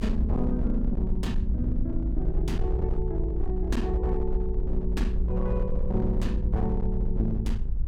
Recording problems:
distortion; hard clipping, signal-to-distortion ratio 12 dB
low-frequency rumble; below 54 Hz, SNR 0 dB

